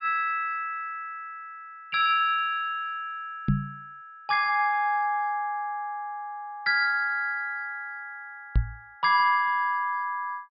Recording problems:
treble cut off; nothing above 5.5 kHz
knock on the microphone; at 3.5 s and at 8.5 s; peak +6 dB vs average level

